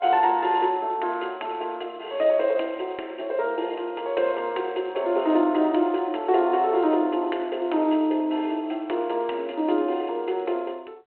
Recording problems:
phone line; 280 Hz to 3.6 kHz, G.726

